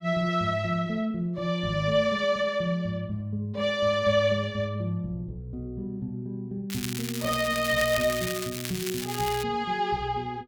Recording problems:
crackle; from 6.5 to 9.5 s; loose cable, SNR 7 dB

